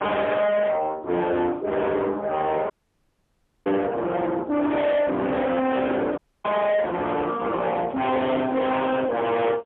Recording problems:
phone line; 220 Hz to 3.6 kHz, AMR-NB, then MP3
distortion; soft clipping, signal-to-distortion ratio 6 dB
dropout; at 2.5 s for 1 s and at 6 s
microphone handling noise; from 4.5 to 8.5 s; peak -6 dB vs average level

